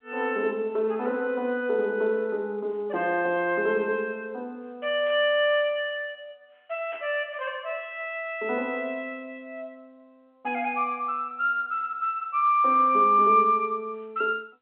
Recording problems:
phone line; 260 Hz to 3.3 kHz, G.711
static burst; at 5 s and at 7 s; peak -16 dB vs average level

